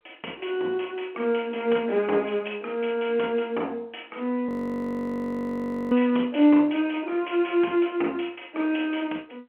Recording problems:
telephone audio; 260 Hz to 3.3 kHz, G.711
audio freezing; at 4.5 s for 1.5 s

